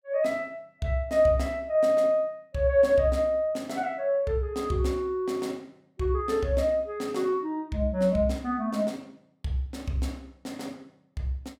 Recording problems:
none

